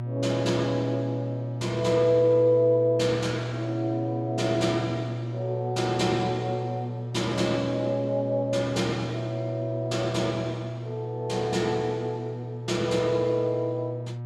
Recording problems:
electrical hum; 60 Hz, harmonics up to 960 Hz, SNR 7 dB

